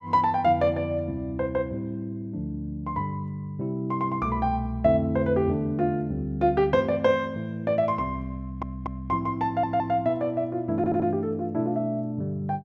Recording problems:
audio stuttering; at 8.5 s, at 9.5 s and at 11 s

